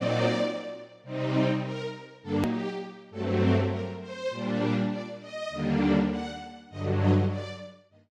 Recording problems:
edit click; at 2.5 s

